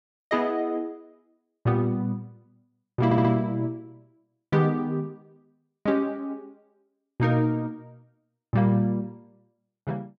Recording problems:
stutter; at 3 s

